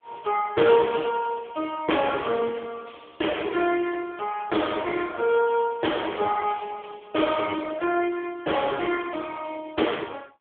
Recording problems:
phone line; 260 Hz to 3.4 kHz, AMR-NB

